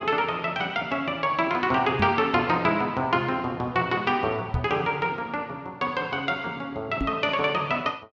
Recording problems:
microphone thump; at 2 s, at 4.5 s and at 7 s; peak +1 dB vs average level

